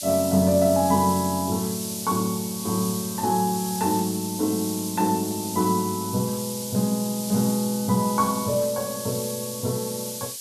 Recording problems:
hiss; SNR 7 dB

